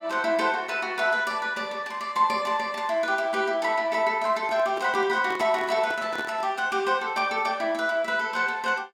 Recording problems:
handling noise; from 4.5 to 6.5 s; peak -6 dB vs average level

